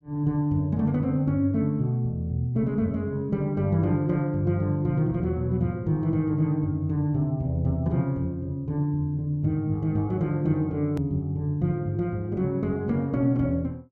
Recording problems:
click at an edit; at 11 s

